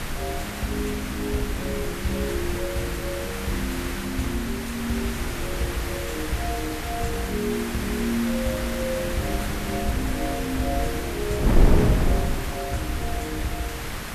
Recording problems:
background hiss; SNR 4 dB
wind on the microphone; below 210 Hz, SNR 1 dB

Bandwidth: 14 kHz